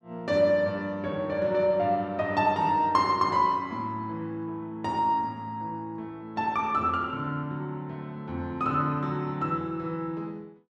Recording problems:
none

